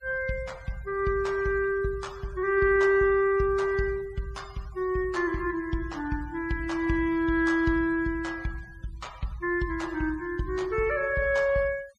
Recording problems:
denoising artefacts; signal-to-artefact ratio 24 dB

